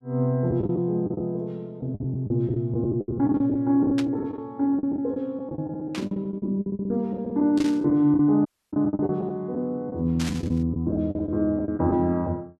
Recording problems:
packet loss; 14% of the sound replaced, filled with the last packet
burst of static; 4 times, first at 4 s; peak -5 dB vs average level
dropout; at 8.5 s

